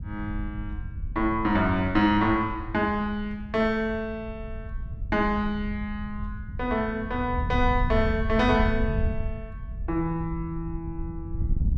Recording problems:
wind on the microphone; below 94 Hz, SNR 7 dB

